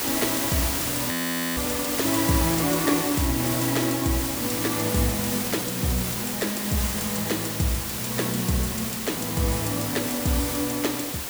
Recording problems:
background hiss; slope -2 dB per octave, SNR 0 dB
frozen audio; at 1 s

